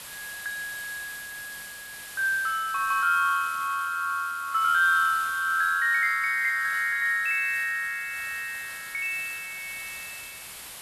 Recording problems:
background hiss; SNR 15 dB

